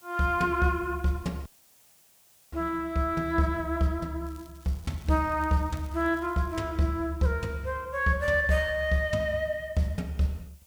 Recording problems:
hiss; SNR 29 dB
dropout; at 1.5 s for 1 s
crackle; from 4.5 to 6.5 s; loose cable, SNR 29 dB

